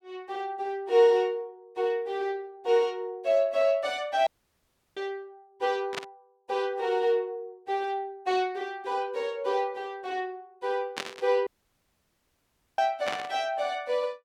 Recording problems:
dropout; at 4.5 s for 0.5 s and at 11 s for 1.5 s
burst of static; at 6 s, at 11 s and at 13 s; peak -1 dB vs average level

